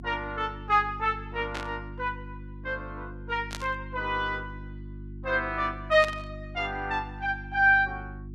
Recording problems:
hum; 50 Hz, harmonics up to 350 Hz, SNR 14 dB
burst of static; at 1.5 s, at 3.5 s and at 6 s; peak -4 dB vs average level

